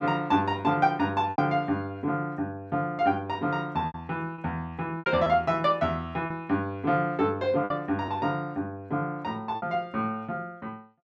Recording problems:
lost packets; 4% of the sound replaced, filled with repeated pitch periods

